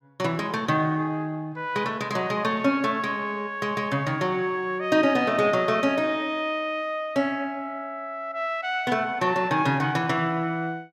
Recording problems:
none

